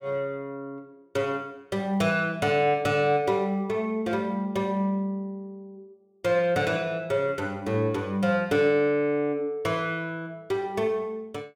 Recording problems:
none

